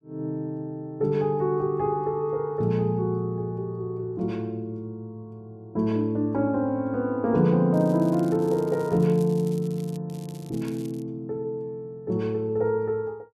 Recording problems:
crackle; from 7.5 to 10 s and at 10 s; loose cable, SNR 24 dB

